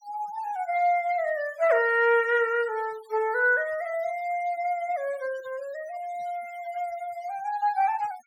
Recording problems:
noise reduction artefacts; signal-to-artefact ratio 24 dB

